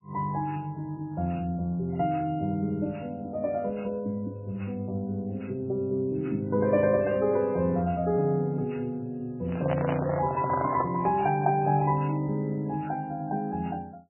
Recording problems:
lossy codec; MP3, log-spectral distance 2 dB, nothing above 2.6 kHz
microphone handling noise; from 9.5 to 11 s; peak +2 dB vs average level

